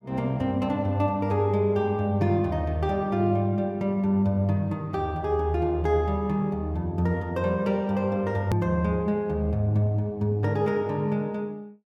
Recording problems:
click at an edit; at 8.5 s

